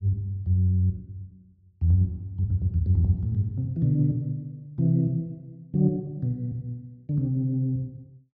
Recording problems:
none

